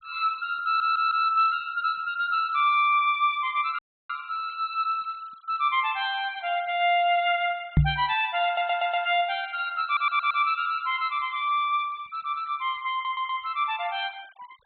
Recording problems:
low-pass filter; nothing above 4 kHz
noise reduction artefacts; signal-to-artefact ratio 26 dB
stutter; 4 times, first at 0.5 s
dropout; at 4 s
microphone bump; at 8 s; peak +8 dB vs average level

